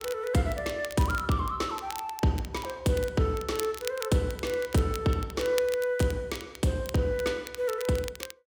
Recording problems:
crackle; vinyl, SNR 14 dB

